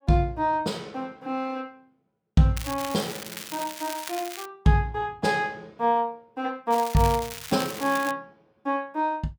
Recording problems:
crackling; from 2.5 to 4.5 s and from 6.5 to 8 s; loose cable, SNR 10 dB

